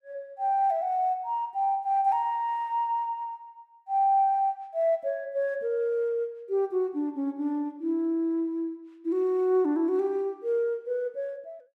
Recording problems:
none

